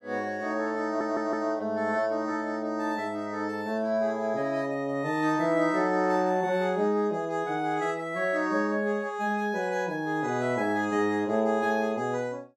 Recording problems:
stutter; at 1 s

